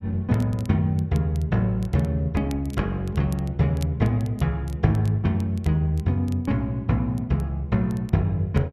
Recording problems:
crackling; vinyl, SNR 27 dB

